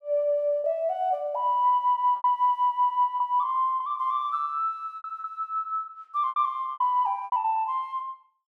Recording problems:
lost packets; 8% of the sound replaced, filled with repeated pitch periods

